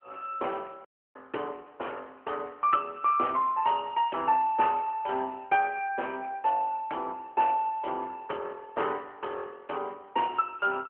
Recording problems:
telephone audio; 300 Hz to 3 kHz, AMR-NB
dropout; at 1 s

